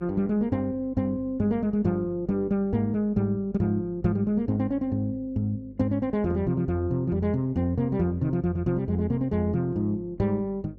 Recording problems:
hum; 50 Hz, harmonics up to 550 Hz, SNR 23 dB

